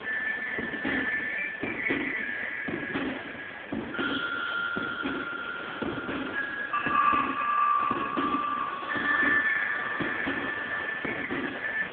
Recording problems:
phone line; 240 Hz to 2.5 kHz, AMR-NB
background hiss; SNR 12 dB

